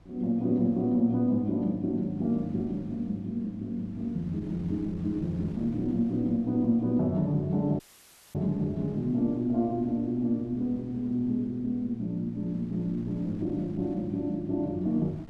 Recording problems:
wind noise; below 250 Hz, SNR 23 dB
dropout; at 8 s for 0.5 s

